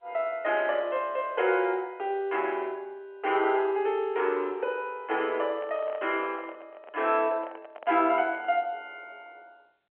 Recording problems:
telephone audio; 280 Hz to 3.2 kHz, G.711
handling noise; from 5.5 to 8.5 s; peak -10 dB vs average level

